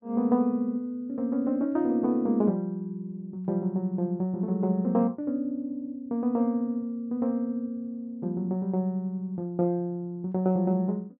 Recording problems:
none

